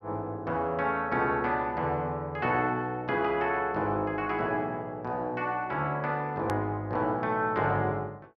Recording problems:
click at an edit; at 6.5 s

